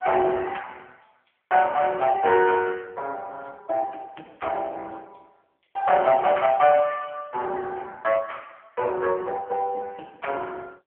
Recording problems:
phone line; 320 Hz to 3 kHz, AMR-NB

